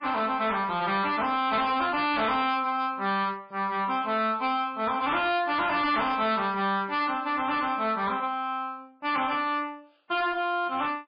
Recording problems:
lossy codec; MP3, log-spectral distance 3 dB, nothing above 4.1 kHz
distortion; hard clipping, signal-to-distortion ratio 11 dB

